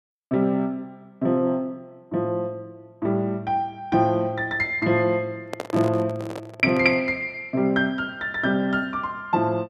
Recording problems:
microphone handling noise; from 5.5 to 7 s; peak -3 dB vs average level

